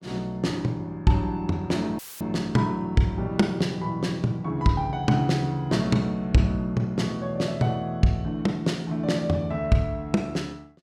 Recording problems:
audio cutting out; at 2 s; filled with static

